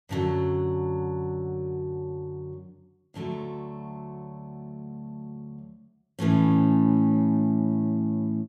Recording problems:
none

